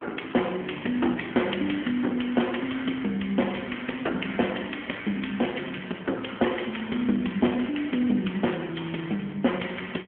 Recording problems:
phone line; 190 Hz to 3.3 kHz, AMR-NB

